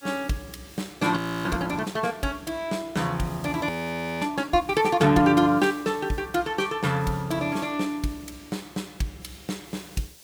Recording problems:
background hiss; SNR 24 dB
frozen audio; at 1 s and at 3.5 s for 0.5 s

